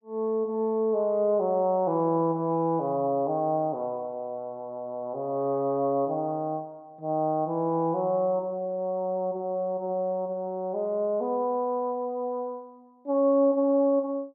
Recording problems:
none

